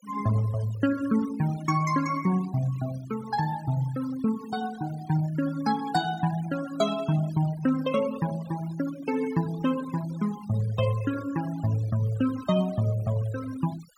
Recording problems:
noise reduction artefacts; signal-to-artefact ratio 19 dB

